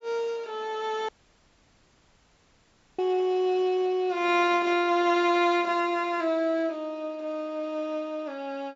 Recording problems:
treble missing; nothing above 8 kHz
dropout; at 1 s for 2 s

